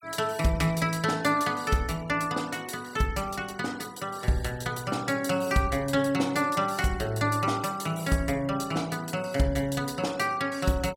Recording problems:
denoising artefacts; signal-to-artefact ratio 21 dB

